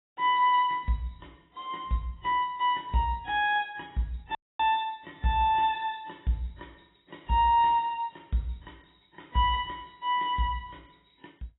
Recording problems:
lossy codec; AAC, log-spectral distance 6 dB, nothing above 3.4 kHz
audio cutting out; at 4.5 s

